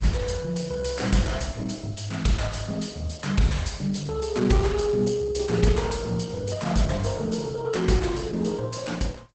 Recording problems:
lossy compression; Opus, log-spectral distance 5 dB, nothing above 8 kHz

